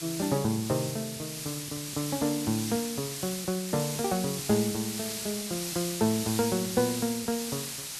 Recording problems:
background hiss; slope +2 dB per octave, SNR 4 dB

